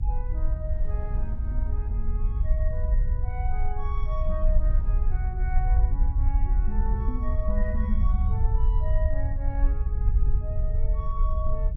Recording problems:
hum; 60 Hz, harmonics up to 480 Hz, SNR 23 dB
rumble; below 58 Hz, SNR -11 dB
wind on the microphone; below 410 Hz, SNR 20 dB

